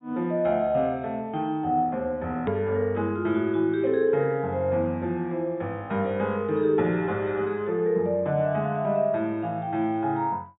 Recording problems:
low-pass filter; nothing above 4 kHz
hard cut with a click; at 2.5 s

